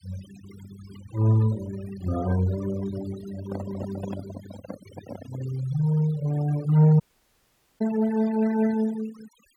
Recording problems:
denoising artefacts; signal-to-artefact ratio 17 dB
microphone handling noise; from 3.5 to 5.5 s; peak -7 dB vs average level
dropout; at 7 s for 1 s

